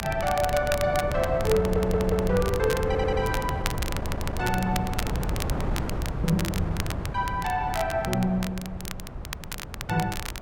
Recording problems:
wind noise; below 290 Hz, SNR 5 dB
crackle; vinyl, SNR 10 dB
audio stuttering; at 1.5 s, at 3 s and at 4 s

